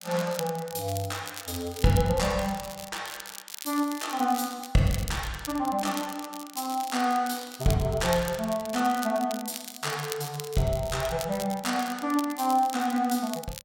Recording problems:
crackle; vinyl, SNR 12 dB

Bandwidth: 16.5 kHz